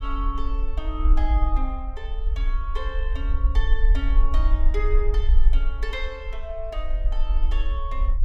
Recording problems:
low-frequency rumble; below 46 Hz, SNR -9 dB

